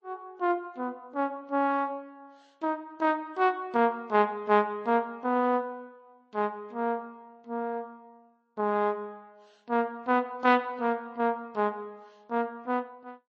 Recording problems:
codec artefacts; MP3, then Vorbis, log-spectral distance 2 dB, nothing above 8 kHz

